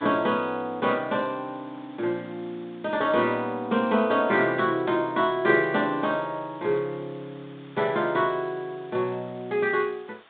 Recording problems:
telephone audio; 150 Hz to 3.8 kHz, G.726
hiss; SNR 27 dB

